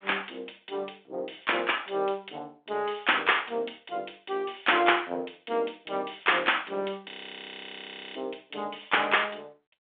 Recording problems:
phone line; 240 Hz to 3.6 kHz, G.726
frozen audio; at 7 s for 1 s

